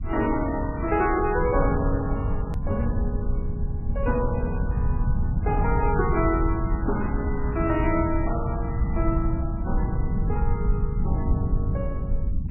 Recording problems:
lossy compression; MP3, log-spectral distance 2 dB, nothing above 2.7 kHz
low-frequency rumble; below 110 Hz, SNR 0 dB
hard cut with a click; at 2.5 s

